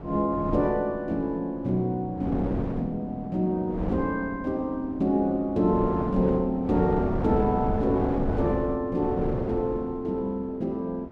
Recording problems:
wind noise; below 420 Hz, SNR 7 dB

